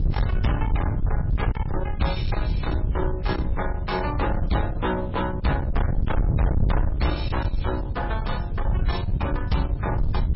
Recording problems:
codec artefacts; MP3, log-spectral distance 2 dB, nothing above 5.3 kHz
distortion; soft clipping, signal-to-distortion ratio 7 dB
background hiss; SNR 29 dB
wind on the microphone; below 110 Hz, SNR -2 dB

